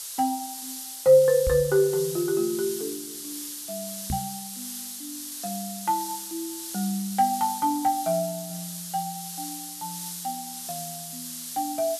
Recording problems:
hiss; SNR 9 dB
microphone bump; at 1.5 s and at 4 s; peak -1 dB vs average level

